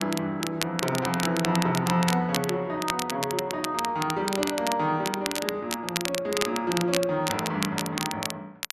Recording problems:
crackling; vinyl, SNR 5 dB

